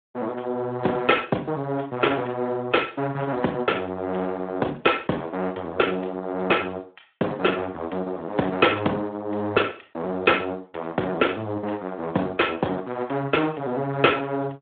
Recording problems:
telephone audio; 260 Hz to 3.4 kHz, Speex

